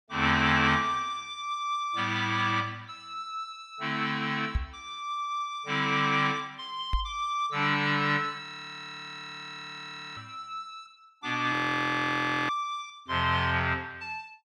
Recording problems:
knock on the microphone; at 4.5 s and at 7 s; peak +3 dB vs average level
audio freezing; at 8.5 s for 1.5 s and at 12 s for 1 s

